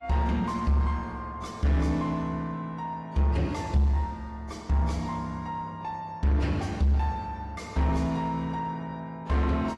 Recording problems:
lossy compression; AAC, log-spectral distance 2 dB
distortion; soft clipping, signal-to-distortion ratio 10 dB

